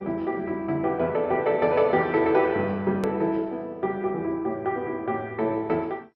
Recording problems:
codec artefacts; MP2, log-spectral distance 2 dB, nothing above 13.1 kHz
click at an edit; at 3 s

